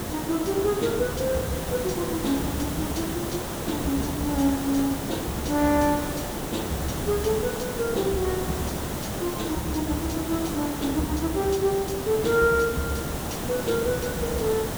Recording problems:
hiss; slope -6 dB per octave, SNR 4 dB

